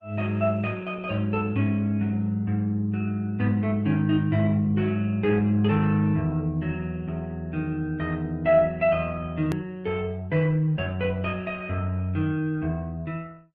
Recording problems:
codec artefacts; Opus, log-spectral distance 2 dB, nothing above 13.1 kHz
hard cut with a click; at 9.5 s

